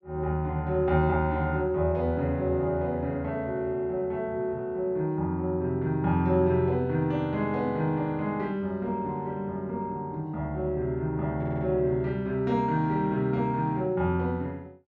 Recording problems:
audio stuttering; at 11 s

